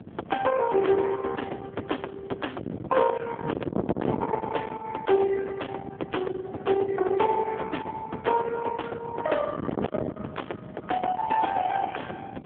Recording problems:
phone line; 320 Hz to 3.4 kHz, AMR-NB
distorted audio; soft clipping, signal-to-distortion ratio 5 dB
wind on the microphone; below 860 Hz, SNR 8 dB

